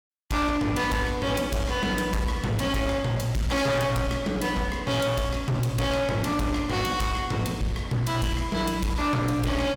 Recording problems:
distorted audio; hard clipping, signal-to-distortion ratio 8 dB

